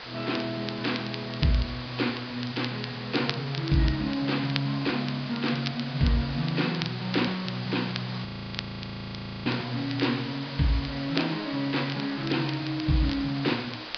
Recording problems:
treble missing; nothing above 5 kHz
lossy codec; Vorbis, log-spectral distance 9 dB
hiss; SNR 9 dB
crackle; vinyl, SNR 12 dB
audio freezing; at 8.5 s for 1 s

